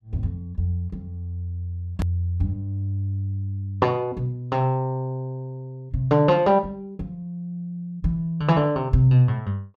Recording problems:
edit click; at 2 s

